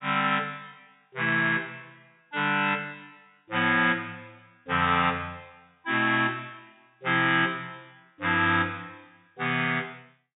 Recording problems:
treble cut off; nothing above 4 kHz

